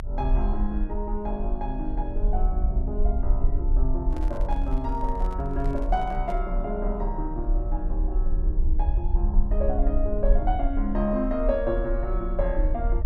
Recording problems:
low-frequency rumble; below 44 Hz, strongest tone 32 Hz, SNR -2 dB
microphone handling noise; from 4 to 6.5 s; peak -7 dB vs average level

